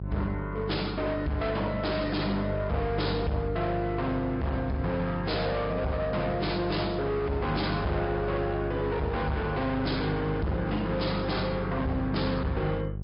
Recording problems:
treble cut off; nothing above 5.2 kHz
lossy compression; MP3, log-spectral distance 2 dB
distortion; hard clipping, signal-to-distortion ratio 6 dB
hum; 50 Hz, harmonics up to 550 Hz, SNR 7 dB

